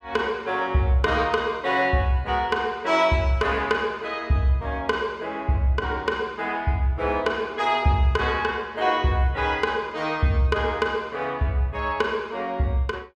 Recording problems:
none

